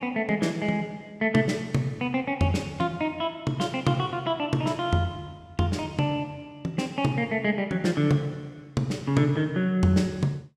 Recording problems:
none

